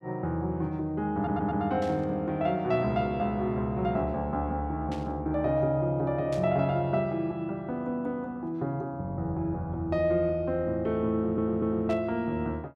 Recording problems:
audio stuttering; at 1 s and at 11 s
burst of static; 4 times, first at 2 s; peak -11 dB vs average level

